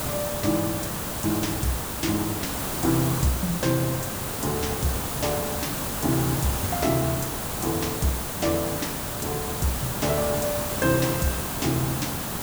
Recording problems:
background hiss; slope -4 dB per octave, SNR 1 dB

